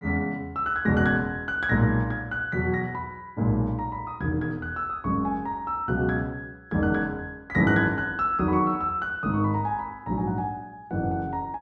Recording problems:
none

